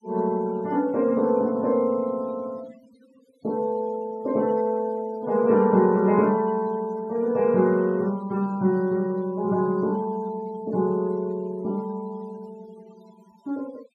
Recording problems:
noise reduction artefacts; signal-to-artefact ratio 26 dB

